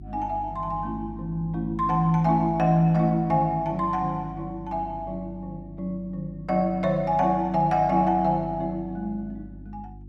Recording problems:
electrical hum; 50 Hz, harmonics up to 350 Hz, SNR 17 dB

